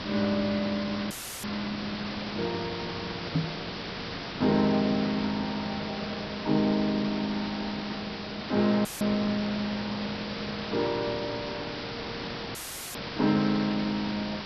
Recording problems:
codec artefacts; Vorbis, log-spectral distance 15 dB, nothing above 11.3 kHz
background hiss; slope -3 dB per octave, SNR 6 dB
dropout; at 1 s, at 9 s and at 13 s; filled with static
microphone bump; at 3.5 s; peak +6 dB vs average level

